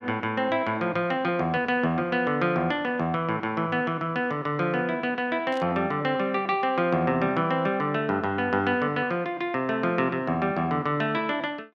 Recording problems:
burst of static; at 5.5 s; peak -13 dB vs average level

